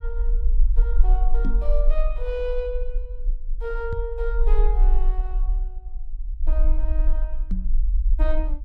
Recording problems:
rumble; below 40 Hz, strongest tone 22 Hz, SNR -8 dB
knock on the microphone; at 1.5 s, at 4 s and at 7.5 s; peak +7 dB vs average level

